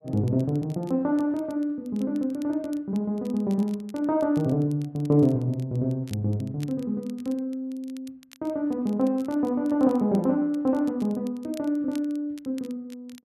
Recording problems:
crackling; vinyl, SNR 27 dB

